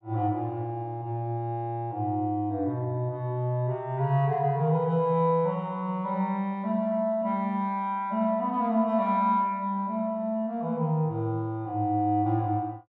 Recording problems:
none

